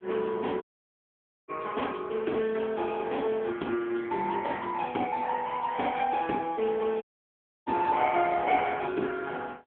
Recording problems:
phone line; 240 Hz to 3.6 kHz, AMR-NB
dropout; at 0.5 s for 1 s and at 7 s for 0.5 s

